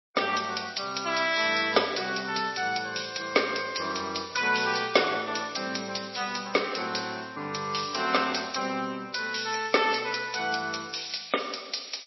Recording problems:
codec artefacts; MP3, log-spectral distance 13 dB, nothing above 5.7 kHz

